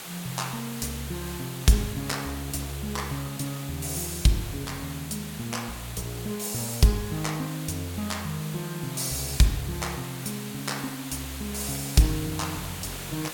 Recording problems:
hiss; slope -1 dB per octave, SNR 9 dB

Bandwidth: 17 kHz